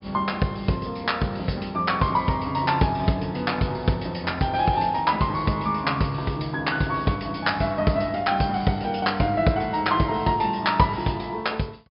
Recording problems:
treble missing; nothing above 5.5 kHz

